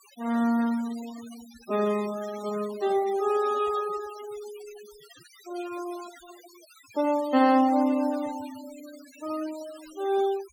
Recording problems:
denoising artefacts; signal-to-artefact ratio 19 dB

